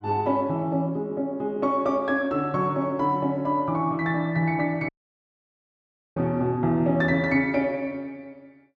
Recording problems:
dropout; at 5 s for 1.5 s

